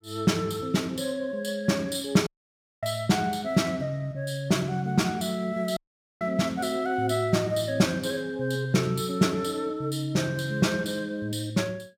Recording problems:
dropout; at 2.5 s for 0.5 s and at 6 s

